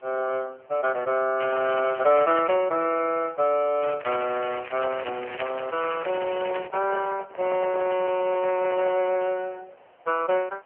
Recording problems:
phone line; 320 Hz to 3.1 kHz, AMR-NB
hiss; SNR 29 dB
crackling; from 1.5 to 2.5 s and from 4 to 6.5 s; loose cable, SNR 14 dB
handling noise; from 6 to 9 s; peak -5 dB vs average level

